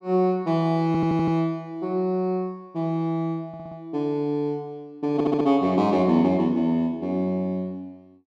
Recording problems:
stutter; at 1 s, at 3.5 s and at 5 s

